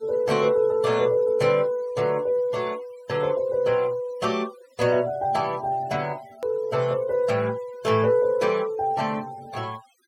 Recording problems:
denoising artefacts; signal-to-artefact ratio 24 dB
click at an edit; at 6.5 s

